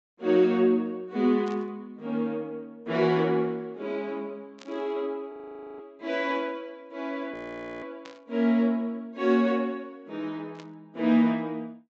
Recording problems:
low-pass filter; nothing above 8 kHz
static burst; 4 times, first at 1.5 s; peak -14 dB vs average level
audio freezing; at 5.5 s and at 7.5 s

